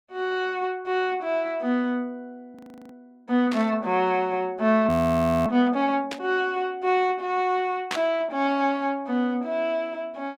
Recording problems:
frozen audio; at 2.5 s and at 5 s for 0.5 s
burst of static; at 3.5 s, at 6 s and at 8 s; peak 0 dB vs average level

